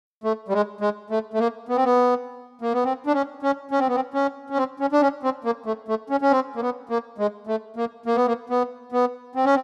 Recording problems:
none

